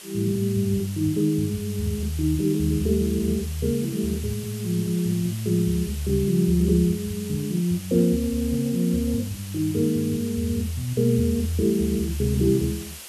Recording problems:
hiss; slope +1 dB per octave, SNR 15 dB

